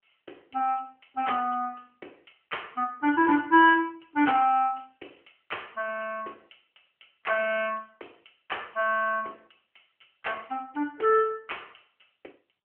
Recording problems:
telephone audio; 300 Hz to 3.2 kHz, AMR-NB

